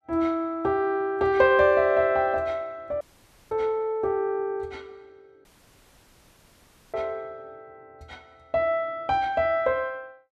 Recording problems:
audio cutting out; at 3 s for 0.5 s and at 5.5 s for 1.5 s

